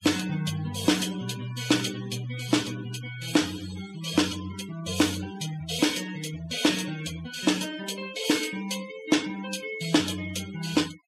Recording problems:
noise reduction artefacts; signal-to-artefact ratio 15 dB

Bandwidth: 15.5 kHz